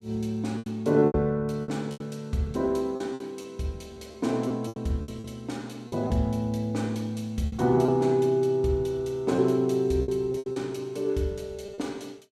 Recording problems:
packet loss; 9% of the sound replaced, filled with repeated pitch periods

